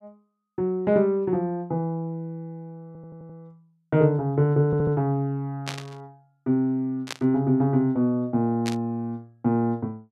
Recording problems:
audio stuttering; at 3 s and at 4.5 s
burst of static; at 5.5 s, at 7 s and at 8.5 s; peak -3 dB vs average level

